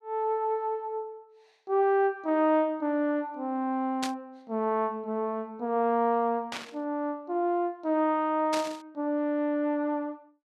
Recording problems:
static burst; at 4 s, at 6.5 s and at 8.5 s; peak -1 dB vs average level

